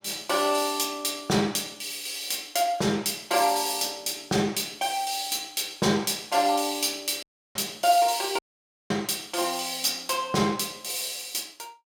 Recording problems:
audio cutting out; at 7 s and at 8.5 s for 0.5 s

